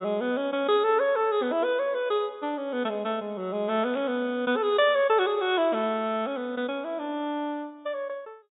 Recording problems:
low-pass filter; nothing above 4 kHz
burst of static; at 4 s; peak -15 dB vs average level

